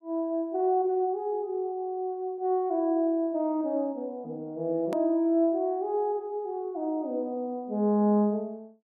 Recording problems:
click at an edit; at 5 s

